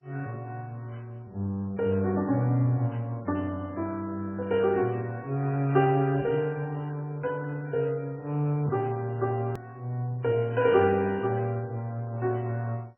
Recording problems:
codec artefacts; MP3, then MP2, log-spectral distance 2 dB, nothing above 2.8 kHz
hard cut with a click; at 9.5 s

